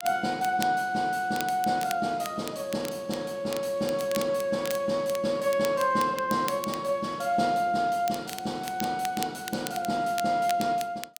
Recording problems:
crackle; vinyl, SNR 13 dB

